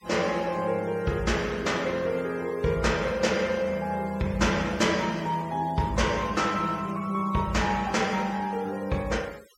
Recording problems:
noise reduction artefacts; signal-to-artefact ratio 21 dB

